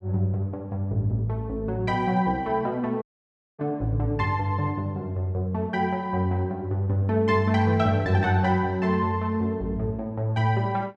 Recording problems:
dropout; at 3 s for 0.5 s

